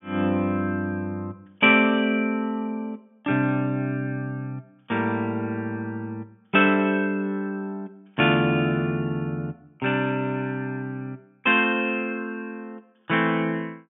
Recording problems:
treble cut off; nothing above 3.5 kHz

